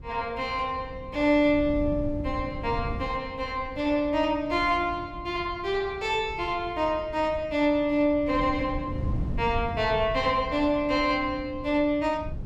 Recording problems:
wind noise; below 150 Hz, SNR 12 dB

